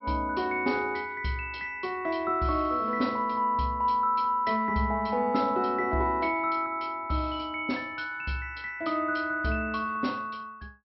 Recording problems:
treble missing; nothing above 5.6 kHz

